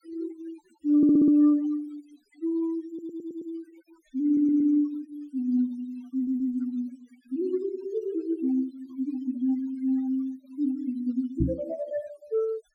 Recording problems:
noise reduction artefacts; signal-to-artefact ratio 25 dB
audio stuttering; 4 times, first at 1 s
microphone bump; at 11 s; peak +5 dB vs average level

